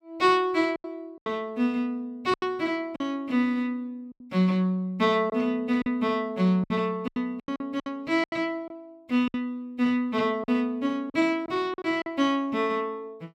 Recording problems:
lost packets; 8% of the sound replaced, filled with silence

